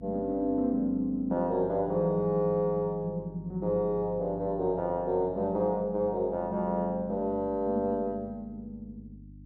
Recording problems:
electrical hum; 50 Hz, harmonics up to 300 Hz, SNR 19 dB

